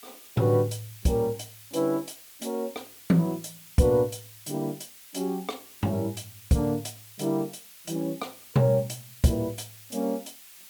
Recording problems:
hiss; slope +3 dB per octave, SNR 18 dB

